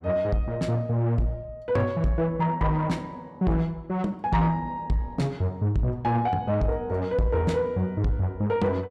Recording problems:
distorted audio; soft clipping, signal-to-distortion ratio 11 dB

